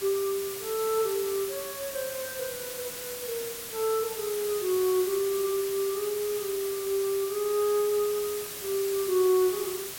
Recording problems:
hiss; slope 0 dB per octave, SNR 7 dB

